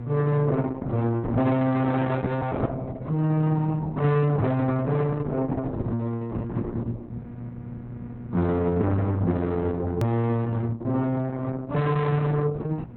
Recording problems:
lossy compression; Opus, log-spectral distance 2 dB, nothing above 18.9 kHz
distorted audio; soft clipping, signal-to-distortion ratio 6 dB
hum; 60 Hz, harmonics up to 960 Hz, SNR 16 dB
edit click; at 10 s

